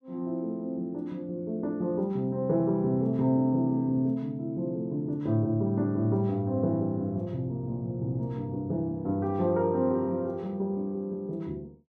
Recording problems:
none

